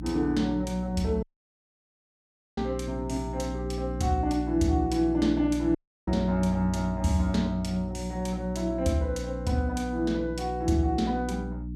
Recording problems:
hum; 60 Hz, harmonics up to 300 Hz, SNR 8 dB
audio cutting out; at 1 s for 1.5 s and at 6 s

